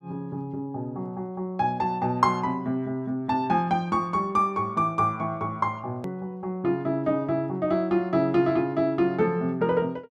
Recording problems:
hard cut with a click; at 6 s

